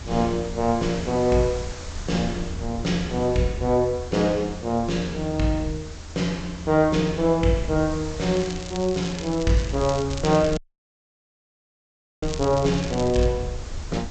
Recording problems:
treble missing; nothing above 8 kHz
hiss; slope -2 dB per octave, SNR 18 dB
rumble; below 82 Hz, SNR 13 dB
crackling; from 8.5 to 13 s; loose cable, SNR 15 dB
audio cutting out; at 11 s for 1.5 s

